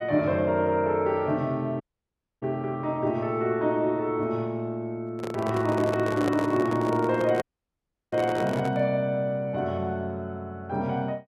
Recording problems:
audio cutting out; at 2 s for 0.5 s and at 7.5 s for 0.5 s
handling noise; from 5 to 9 s; peak 0 dB vs average level

